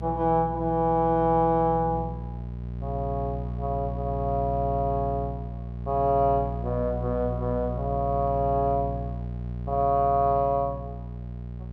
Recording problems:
hum; 60 Hz, harmonics up to 600 Hz, SNR 8 dB

